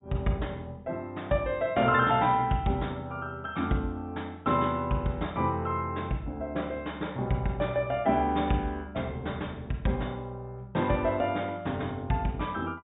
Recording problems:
low-pass filter; nothing above 4 kHz

